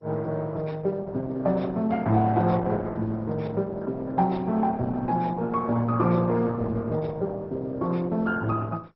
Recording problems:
codec artefacts; Opus, then MP2, log-spectral distance 3 dB, nothing above 5.5 kHz

